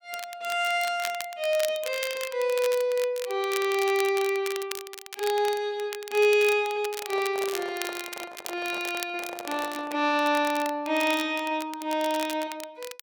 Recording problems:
crackle; vinyl, SNR 12 dB
microphone handling noise; from 7 to 10 s; peak -8 dB vs average level

